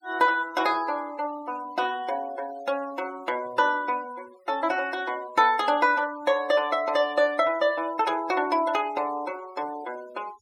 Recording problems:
denoising artefacts; signal-to-artefact ratio 20 dB

